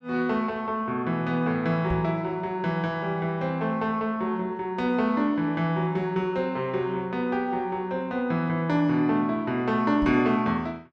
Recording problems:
knock on the microphone; at 2 s and at 10 s; peak -2 dB vs average level

